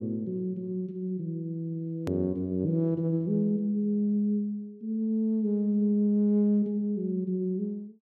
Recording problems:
click at an edit; at 2 s

